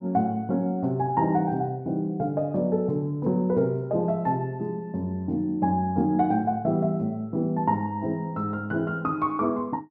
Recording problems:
none

